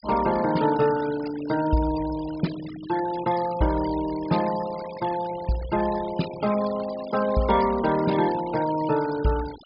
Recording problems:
treble missing; nothing above 5.5 kHz
noise reduction artefacts; signal-to-artefact ratio 16 dB

